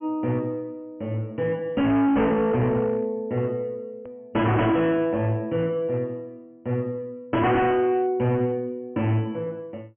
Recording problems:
treble cut off; nothing above 3.1 kHz
distorted audio; hard clipping, uneven, signal-to-distortion ratio 7 dB
hard cut with a click; at 4 s

